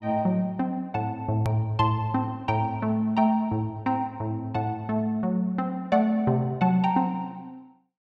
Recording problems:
edit click; at 1.5 s

